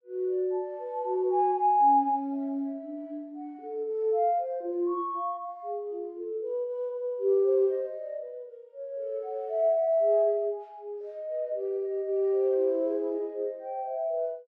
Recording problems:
none

